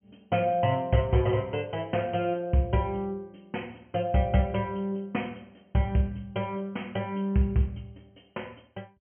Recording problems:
treble cut off; nothing above 3.2 kHz

